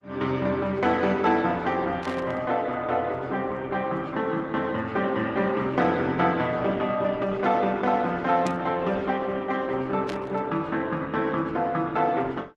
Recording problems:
codec artefacts; Opus, log-spectral distance 3 dB
burst of static; at 2 s, at 8.5 s and at 10 s; peak -7 dB vs average level

